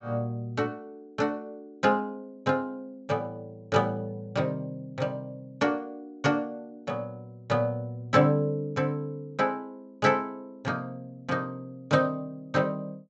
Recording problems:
treble missing; nothing above 8 kHz

